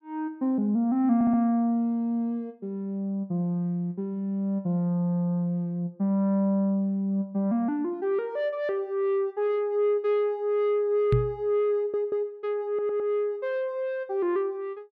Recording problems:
stutter; at 1 s, at 12 s and at 13 s
microphone bump; at 11 s; peak +6 dB vs average level

